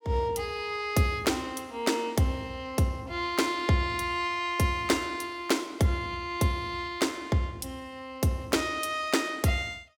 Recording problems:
none

